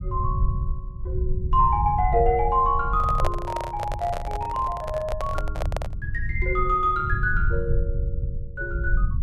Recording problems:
rumble; below 82 Hz, SNR 4 dB
handling noise; from 3 to 6 s; peak +1 dB vs average level

